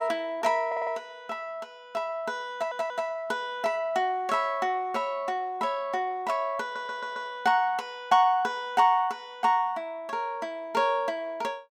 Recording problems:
audio stuttering; at 0.5 s, at 2.5 s and at 6.5 s

